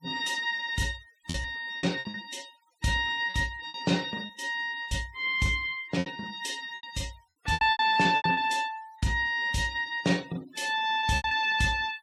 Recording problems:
noise reduction artefacts; signal-to-artefact ratio 23 dB
lost packets; 9% of the sound replaced, filled with repeated pitch periods

